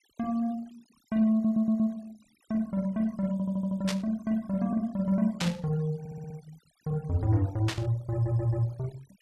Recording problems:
noise reduction artefacts; signal-to-artefact ratio 27 dB
stutter; 4 times, first at 1.5 s
static burst; at 4 s, at 5.5 s and at 7.5 s; peak +1 dB vs average level

